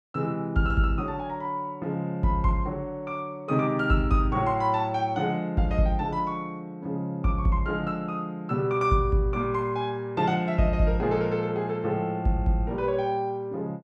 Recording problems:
none

